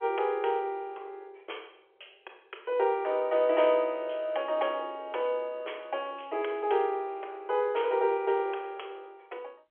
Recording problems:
phone line; 340 Hz to 3.4 kHz, G.711

